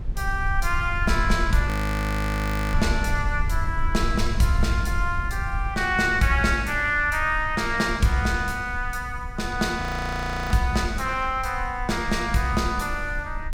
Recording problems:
low-frequency rumble; below 74 Hz, SNR 6 dB
frozen audio; at 1.5 s for 1 s and at 10 s for 0.5 s

